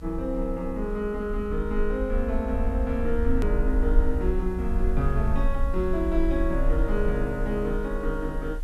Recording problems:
background hiss; SNR 27 dB
low-frequency rumble; below 52 Hz, SNR 2 dB
hard cut with a click; at 3.5 s

